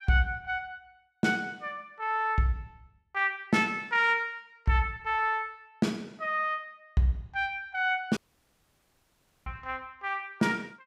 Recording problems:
dropout; at 8 s for 1.5 s

